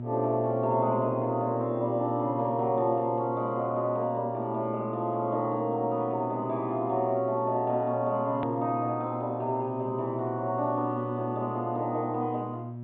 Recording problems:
low-pass filter; nothing above 4 kHz
hum; 60 Hz, harmonics up to 600 Hz, SNR 9 dB
hard cut with a click; at 8.5 s

